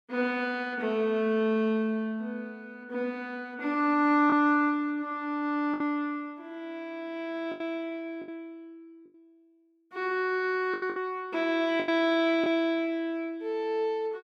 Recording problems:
packet loss; 3% of the sound replaced, filled with the last packet

